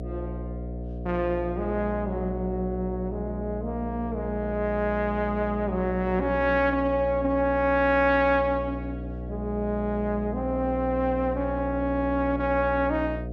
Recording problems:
mains hum; 60 Hz, harmonics up to 720 Hz, SNR 8 dB

